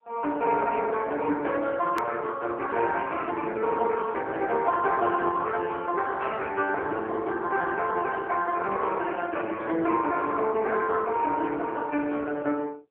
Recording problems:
phone line; 260 Hz to 3.3 kHz, AMR-NB
edit click; at 2 s

